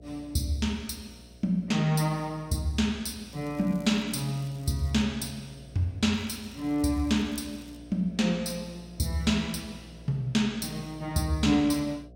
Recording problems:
hum; 60 Hz, harmonics up to 720 Hz, SNR 22 dB
crackling; from 3.5 to 5 s and from 6 to 8 s; loose cable, SNR 27 dB

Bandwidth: 16.5 kHz